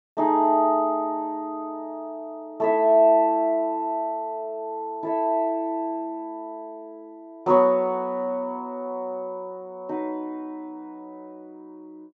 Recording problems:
treble cut off; nothing above 8 kHz

